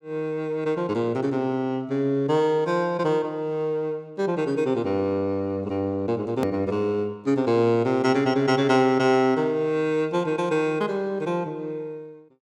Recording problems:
click at an edit; at 6.5 s

